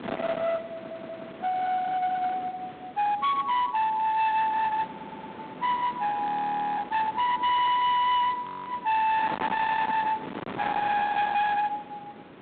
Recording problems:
phone line; 990 Hz to 2 kHz, G.726
distorted audio; hard clipping, signal-to-distortion ratio 8 dB
wind noise; below 1.3 kHz, SNR 11 dB
audio stuttering; 4 times, first at 0.5 s
audio freezing; at 6.5 s for 0.5 s and at 8.5 s

